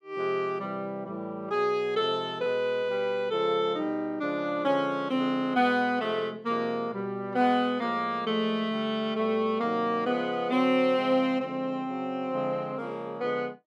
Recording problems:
none

